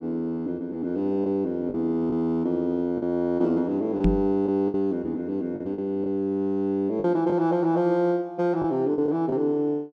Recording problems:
packet loss; 5% of the sound replaced, filled with the last packet
microphone thump; at 4 s; peak +6 dB vs average level

